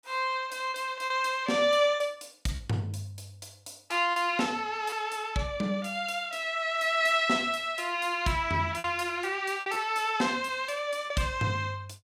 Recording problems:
packet loss; 4% of the sound replaced, filled with repeated pitch periods

